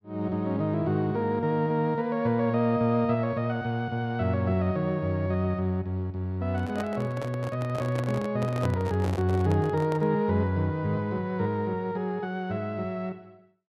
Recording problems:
handling noise; from 6.5 to 10 s; peak -2 dB vs average level

